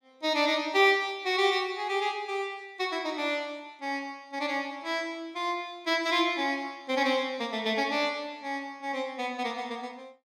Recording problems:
none

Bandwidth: 16 kHz